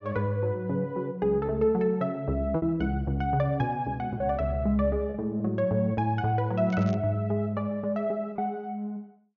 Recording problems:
treble cut off; nothing above 6.8 kHz
packet loss; 2% of the sound replaced, filled with repeated pitch periods
crackle; at 6.5 s; loose cable, SNR 25 dB

